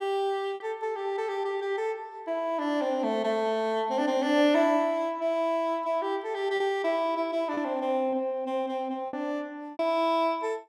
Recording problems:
lost packets; 3% of the sound replaced, filled with repeated pitch periods

